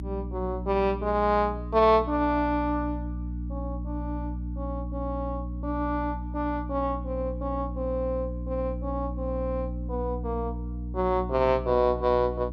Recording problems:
hum; 60 Hz, harmonics up to 300 Hz, SNR 7 dB

